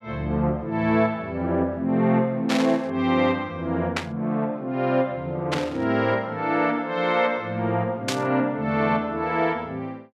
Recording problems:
static burst; 4 times, first at 2.5 s; peak +2 dB vs average level

